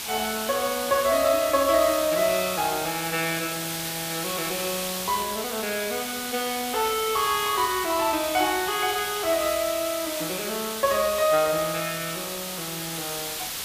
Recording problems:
background hiss; slope +1 dB per octave, SNR 5 dB
crackle; from 5 to 9 s and at 12 s; loose cable, SNR 28 dB

